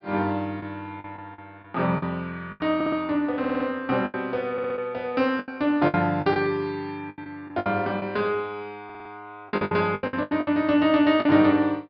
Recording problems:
low-pass filter; nothing above 5.5 kHz
packet loss; 11% of the sound replaced, filled with the last packet
audio stuttering; 4 times, first at 3 s

